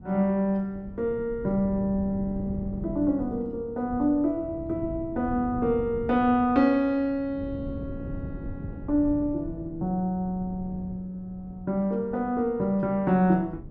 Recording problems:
wind on the microphone; below 220 Hz, SNR 13 dB

